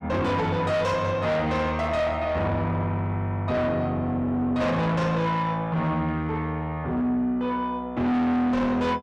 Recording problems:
distorted audio; soft clipping, signal-to-distortion ratio 7 dB

